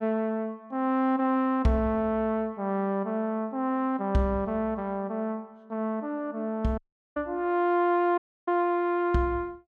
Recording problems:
dropout; at 7 s and at 8 s

